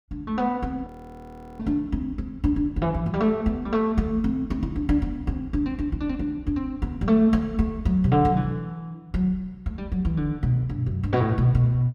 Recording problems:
frozen audio; at 1 s for 0.5 s

